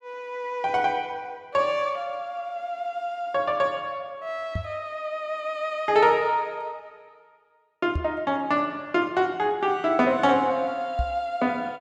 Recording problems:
microphone bump; at 4.5 s, at 8 s and at 11 s; peak +1 dB vs average level

